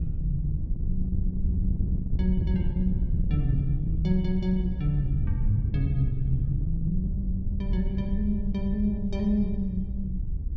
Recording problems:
wind noise; below 88 Hz, SNR 0 dB

